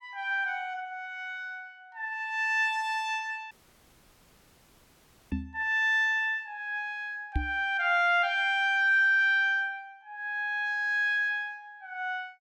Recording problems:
audio cutting out; at 3.5 s for 2 s
microphone bump; at 5.5 s and at 7.5 s; peak +1 dB vs average level

